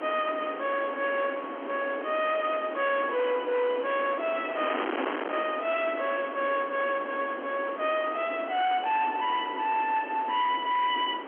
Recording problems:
telephone audio; 240 Hz to 3.3 kHz, G.711
distortion; hard clipping, signal-to-distortion ratio 5 dB
wind noise; below 1.4 kHz, SNR 9 dB

